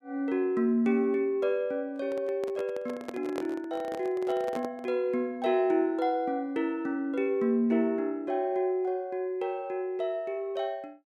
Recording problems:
handling noise; from 2 to 5 s; peak -3 dB vs average level

